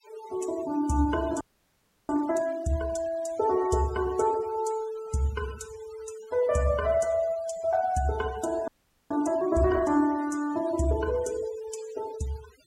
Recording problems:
denoising artefacts; signal-to-artefact ratio 19 dB
frozen audio; at 1.5 s for 0.5 s and at 8.5 s

